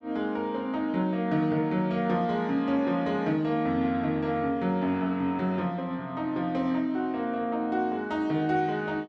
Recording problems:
none

